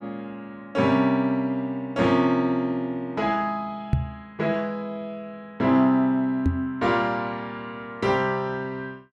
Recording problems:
microphone thump; at 4 s and at 6.5 s; peak +7 dB vs average level

